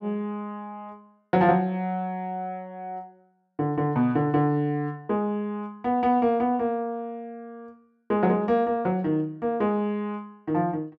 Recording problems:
none

